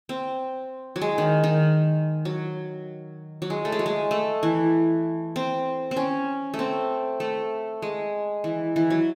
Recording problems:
none

